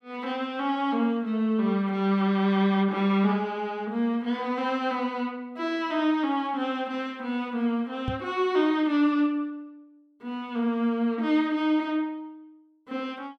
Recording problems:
knock on the microphone; at 8 s; peak -1 dB vs average level

